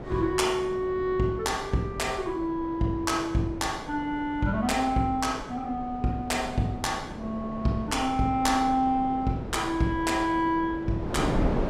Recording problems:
wind on the microphone; below 520 Hz, SNR 11 dB

